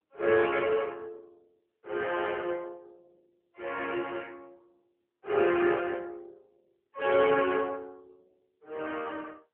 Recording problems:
telephone audio; 300 Hz to 3.3 kHz, AMR-NB

